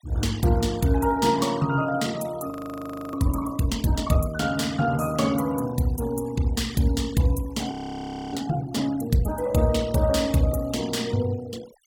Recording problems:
noise reduction artefacts; signal-to-artefact ratio 19 dB
frozen audio; at 2.5 s for 0.5 s and at 7.5 s for 0.5 s

